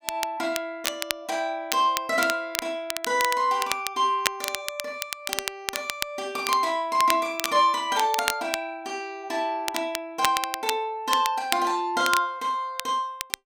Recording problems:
crackling; vinyl, SNR 6 dB

